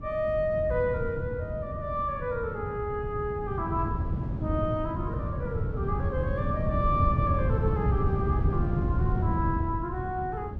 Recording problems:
wind on the microphone; below 160 Hz, SNR 0 dB

